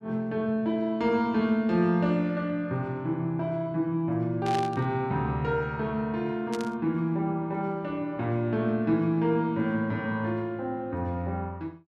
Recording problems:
burst of static; at 4.5 s and at 6.5 s; peak -5 dB vs average level

